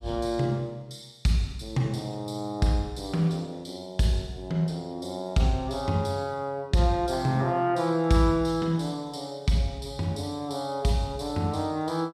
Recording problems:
none

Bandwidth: 14.5 kHz